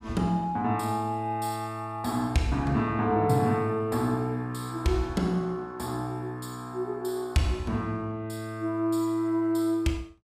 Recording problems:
none

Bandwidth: 15 kHz